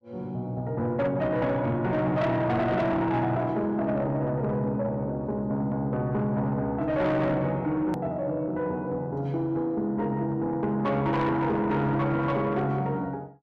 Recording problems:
distorted audio; soft clipping, signal-to-distortion ratio 10 dB
edit click; at 8 s

